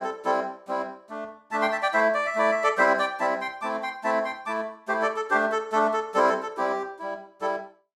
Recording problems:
none

